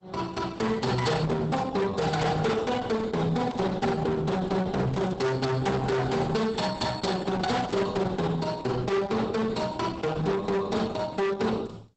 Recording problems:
lossy compression; Opus, log-spectral distance 4 dB, nothing above 8 kHz
distortion; hard clipping, signal-to-distortion ratio 6 dB
static burst; 4 times, first at 1.5 s; peak -13 dB vs average level

